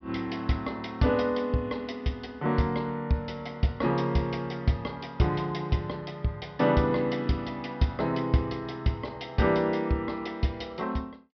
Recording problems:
treble cut off; nothing above 5.5 kHz

